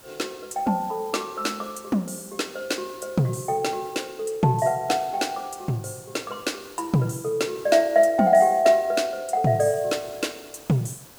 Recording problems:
hiss; SNR 23 dB

